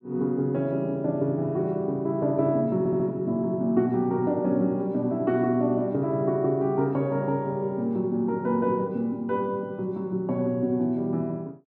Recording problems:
stutter; at 3 s

